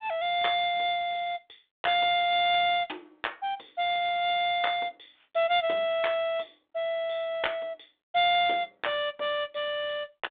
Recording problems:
phone line; 260 Hz to 3.7 kHz, G.726

